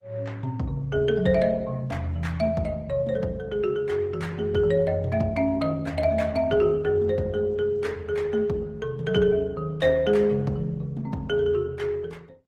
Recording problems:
lossy compression; Opus, then Opus, log-spectral distance 2 dB, nothing above 18.9 kHz

